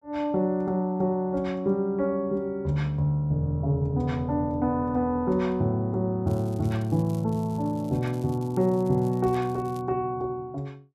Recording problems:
crackling; from 6.5 to 10 s; loose cable, SNR 27 dB

